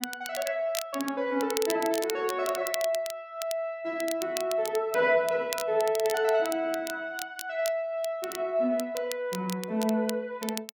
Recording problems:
crackling; vinyl, SNR 10 dB

